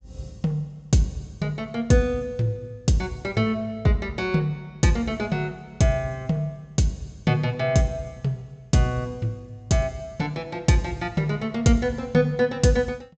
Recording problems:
treble cut off; nothing above 8 kHz

